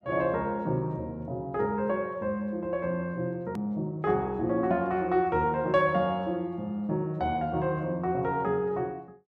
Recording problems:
click at an edit; at 3.5 s

